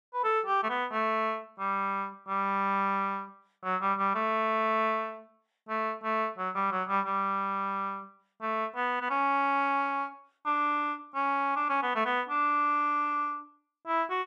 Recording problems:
none

